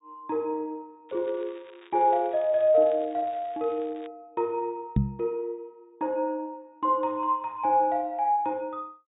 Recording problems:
treble missing; nothing above 4 kHz
crackle; from 1 to 4 s; loose cable, SNR 27 dB
microphone thump; at 5 s; peak +7 dB vs average level

